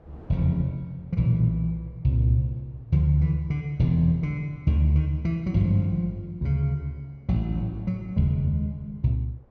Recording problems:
wind noise; below 450 Hz, SNR 30 dB

